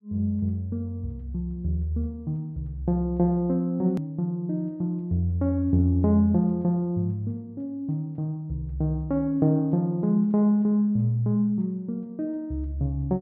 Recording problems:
low-pass filter; nothing above 5.5 kHz
edit click; at 4 s

